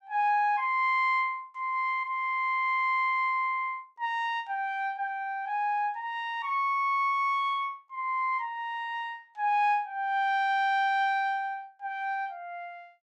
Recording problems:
none

